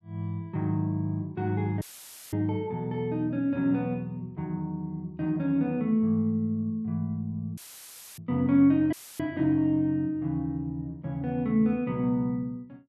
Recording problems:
audio cutting out; at 2 s for 0.5 s, at 7.5 s for 0.5 s and at 9 s; filled with static

